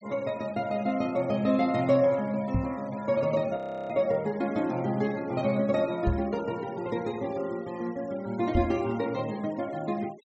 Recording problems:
low-pass filter; nothing above 7.9 kHz
noise reduction artefacts; signal-to-artefact ratio 22 dB
knock on the microphone; at 2.5 s, at 6 s and at 8.5 s; peak +4 dB vs average level
frozen audio; at 3.5 s

